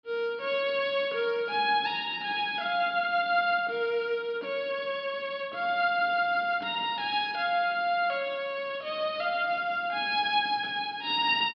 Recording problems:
treble missing; nothing above 5.5 kHz

